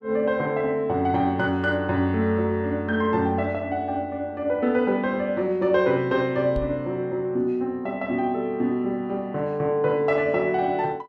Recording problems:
microphone bump; at 6.5 s; peak -5 dB vs average level

